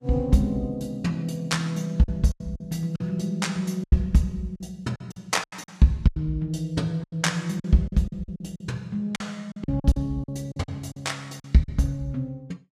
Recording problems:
codec artefacts; Vorbis, log-spectral distance 2 dB, nothing above 15.1 kHz
lost packets; 11% of the sound replaced, filled with silence

